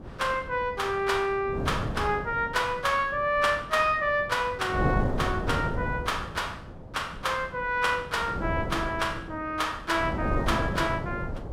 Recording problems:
wind on the microphone; below 430 Hz, SNR 7 dB

